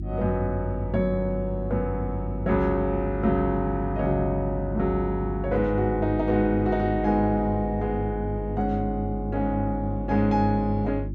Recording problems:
electrical hum; 50 Hz, harmonics up to 350 Hz, SNR 7 dB

